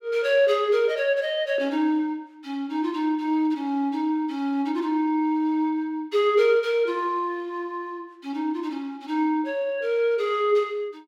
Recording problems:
none

